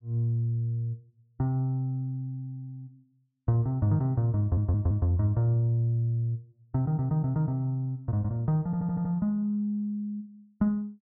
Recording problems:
stutter; at 4.5 s and at 8.5 s

